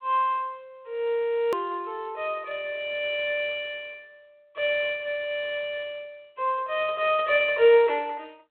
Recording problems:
phone line; 300 Hz to 3.5 kHz, G.726
hard cut with a click; at 1.5 s

